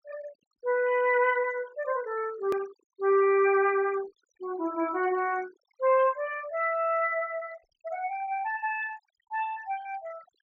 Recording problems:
low-pass filter; nothing above 7.2 kHz
noise reduction artefacts; signal-to-artefact ratio 22 dB
edit click; at 2.5 s

